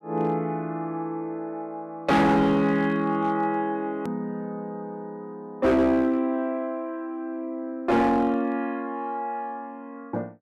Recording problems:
distortion; hard clipping, signal-to-distortion ratio 10 dB
click at an edit; at 4 s

